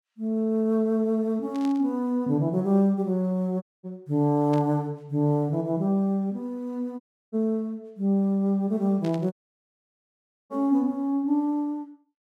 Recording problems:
static burst; at 1.5 s, at 4.5 s and at 9 s; peak -13 dB vs average level
audio cutting out; at 3.5 s, at 7 s and at 9.5 s for 1 s

